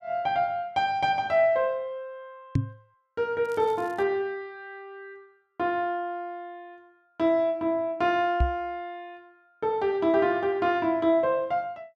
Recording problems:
microphone bump; at 2.5 s and at 8.5 s; peak +5 dB vs average level
crackle; at 3.5 s; loose cable, SNR 29 dB

